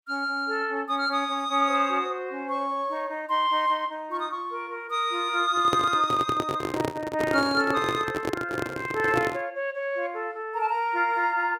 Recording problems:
handling noise; from 5.5 to 9.5 s; peak +3 dB vs average level

